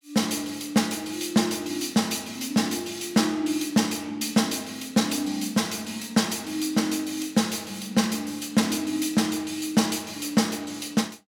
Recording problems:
none

